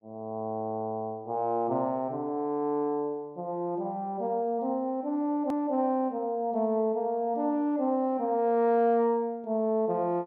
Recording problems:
hard cut with a click; at 5.5 s

